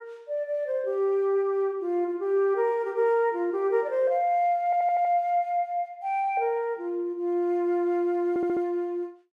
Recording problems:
stutter; at 4.5 s and at 8.5 s

